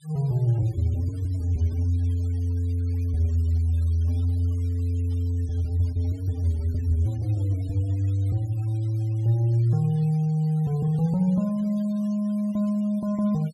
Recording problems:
denoising artefacts; signal-to-artefact ratio 28 dB

